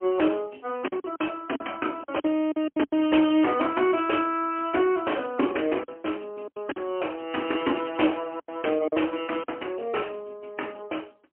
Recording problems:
telephone audio; 240 Hz to 3.1 kHz, AMR-NB, then MP3
lost packets; 7% of the sound replaced, filled with silence

